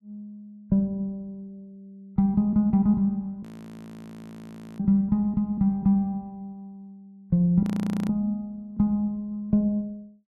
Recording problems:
audio freezing; at 3.5 s for 1.5 s and at 7.5 s

